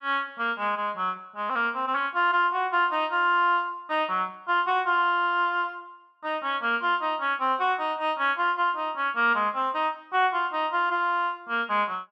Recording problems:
none

